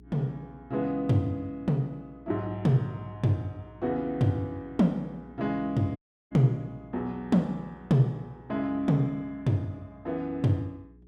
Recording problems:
hum; 60 Hz, harmonics up to 420 Hz, SNR 25 dB
dropout; at 6 s

